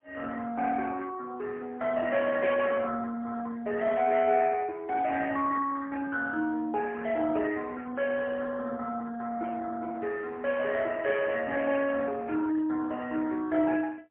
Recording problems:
phone line; 260 Hz to 2.3 kHz, AMR-NB, then MP3

